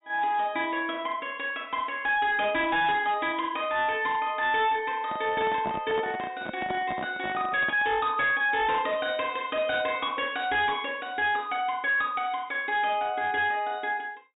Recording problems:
low-pass filter; nothing above 4 kHz
distorted audio; hard clipping, signal-to-distortion ratio 10 dB
handling noise; from 5 to 8 s; peak -3 dB vs average level

